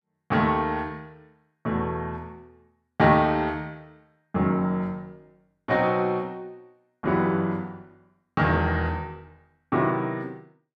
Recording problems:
none

